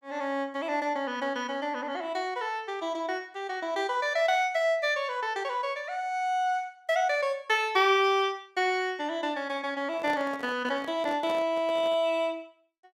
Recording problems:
handling noise; from 10 to 12 s; peak -7 dB vs average level

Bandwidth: 16 kHz